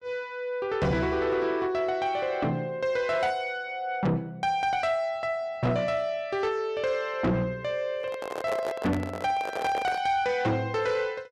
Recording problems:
distortion; soft clipping, signal-to-distortion ratio 10 dB
microphone handling noise; from 8 to 10 s; peak 0 dB vs average level

